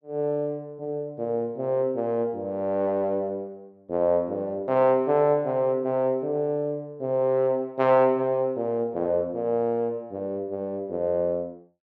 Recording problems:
none

